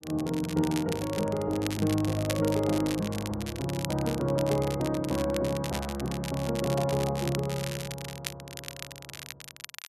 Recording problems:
crackling; vinyl, SNR 11 dB

